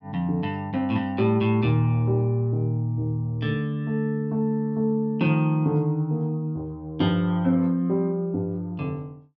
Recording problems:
none

